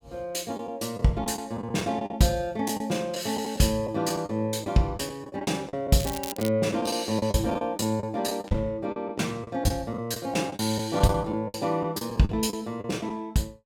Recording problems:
lost packets; 11% of the sound replaced, filled with the last packet
crackling; at 6 s; loose cable, SNR 9 dB

